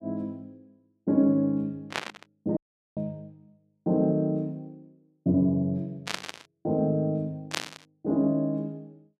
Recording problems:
static burst; at 2 s, at 6 s and at 7.5 s; peak +2 dB vs average level
dropout; at 2.5 s

